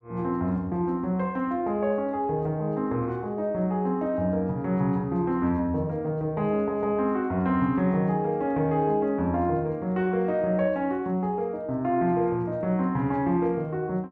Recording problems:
none

